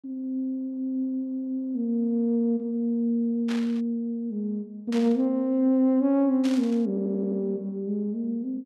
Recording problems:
static burst; at 3.5 s, at 5 s and at 6.5 s; peak -7 dB vs average level
stutter; at 7 s

